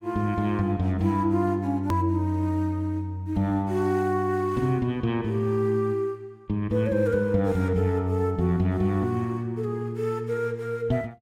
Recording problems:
hard cut with a click; at 2 s

